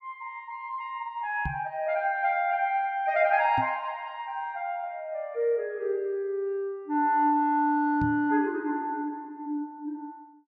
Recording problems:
microphone thump; at 1.5 s, at 3.5 s and at 8 s; peak -1 dB vs average level

